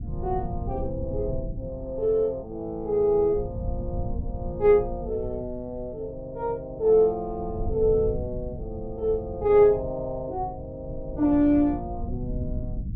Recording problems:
treble missing; nothing above 7.5 kHz
low-frequency rumble; below 130 Hz, SNR 11 dB

